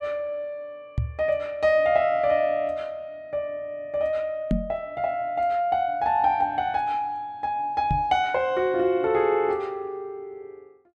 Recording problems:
knock on the microphone; at 1 s, at 4.5 s and at 8 s; peak +4 dB vs average level

